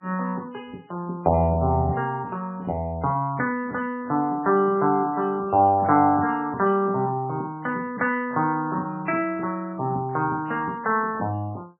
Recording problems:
lossy codec; MP3, log-spectral distance 2 dB, nothing above 2.7 kHz

